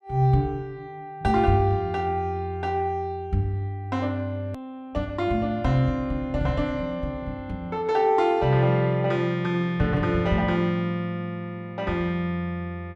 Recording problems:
hard cut with a click; at 4.5 s

